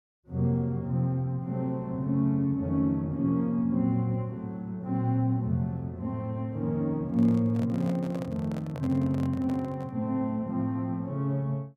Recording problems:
microphone handling noise; from 7 to 10 s; peak -9 dB vs average level

